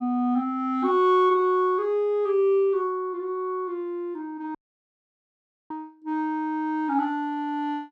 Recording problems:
dropout; at 4.5 s for 1 s

